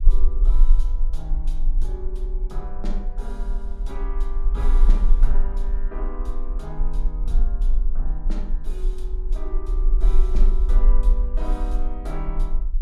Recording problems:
rumble; below 36 Hz, strongest tone 24 Hz, SNR -12 dB

